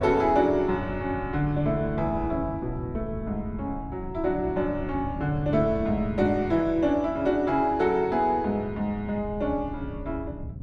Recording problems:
wind on the microphone; below 150 Hz, SNR 12 dB

